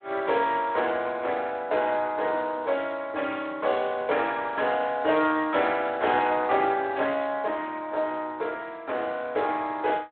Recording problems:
phone line; 280 Hz to 3.9 kHz, Speex

